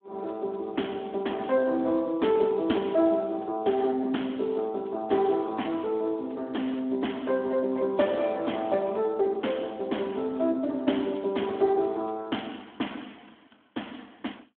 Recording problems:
phone line; 220 Hz to 3.3 kHz, Speex

